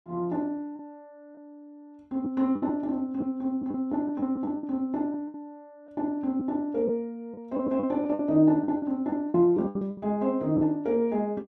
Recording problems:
packet loss; 8% of the sound replaced, filled with the last packet

